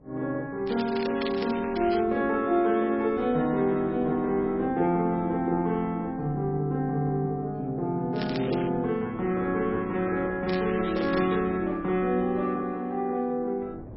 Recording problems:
lossy compression; MP3, log-spectral distance 3 dB
wind on the microphone; below 400 Hz, SNR 20 dB
crackling; from 0.5 to 2 s, at 8 s and at 10 s; loose cable, SNR 14 dB

